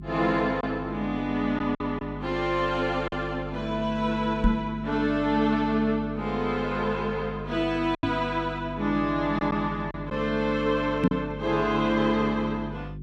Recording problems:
electrical hum; 50 Hz, harmonics up to 400 Hz, SNR 11 dB
lost packets; 2% of the sound replaced, filled with silence
microphone bump; at 4.5 s, at 8 s and at 11 s; peak +8 dB vs average level

